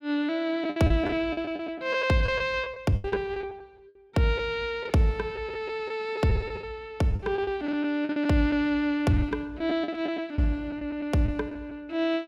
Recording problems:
packet loss; 10% of the sound replaced, filled with the last packet

